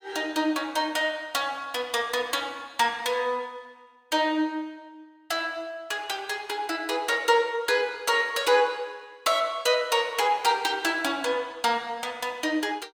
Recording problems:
none

